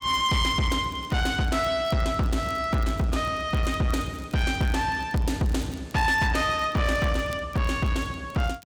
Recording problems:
distorted audio; soft clipping, signal-to-distortion ratio 12 dB
crackle; vinyl, SNR 26 dB

